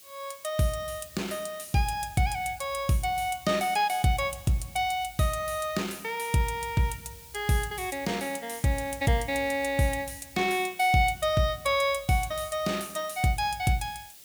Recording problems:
background hiss; SNR 19 dB

